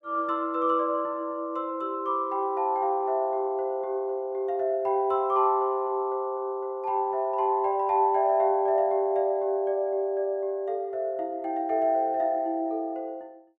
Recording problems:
none

